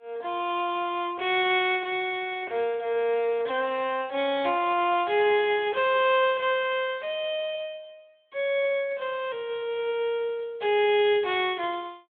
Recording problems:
phone line; 300 Hz to 3.6 kHz, Speex

